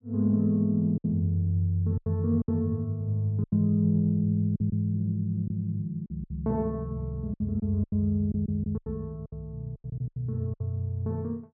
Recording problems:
packet loss; 9% of the sound replaced, filled with silence

